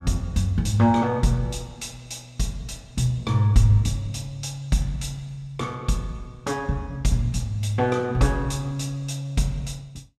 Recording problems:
none

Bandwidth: 14 kHz